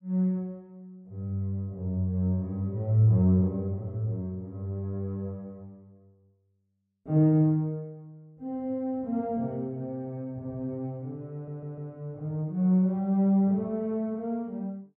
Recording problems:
audio stuttering; at 11 s

